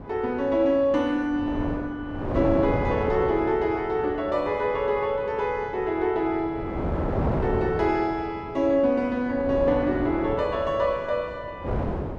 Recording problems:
wind noise; below 580 Hz, SNR 7 dB

